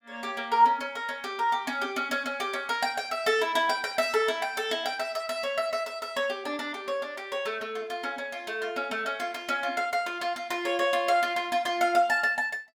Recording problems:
none

